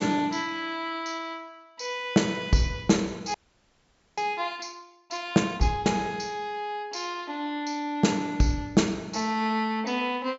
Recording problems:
low-pass filter; nothing above 8 kHz
audio freezing; at 3.5 s for 1 s

